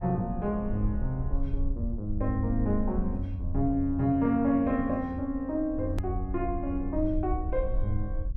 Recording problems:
low-frequency rumble; below 64 Hz, SNR 7 dB
edit click; at 6 s

